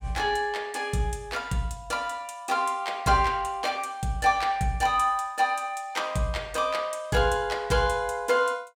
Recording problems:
none

